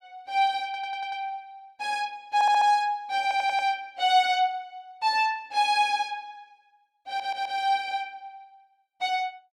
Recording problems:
stutter; 4 times, first at 0.5 s

